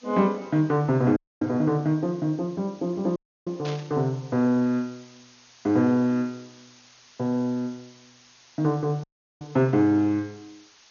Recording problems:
codec artefacts; MP2, log-spectral distance 10 dB
background hiss; slope +2 dB per octave, SNR 28 dB
audio cutting out; at 1 s, at 3 s and at 9 s
burst of static; at 3.5 s; peak -9 dB vs average level

